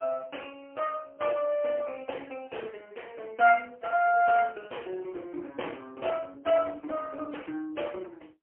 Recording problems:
phone line; 280 Hz to 3.1 kHz, AMR-NB, then MP3

